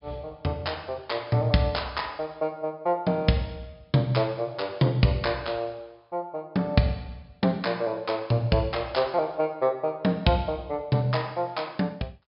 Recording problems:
low-pass filter; nothing above 5.5 kHz

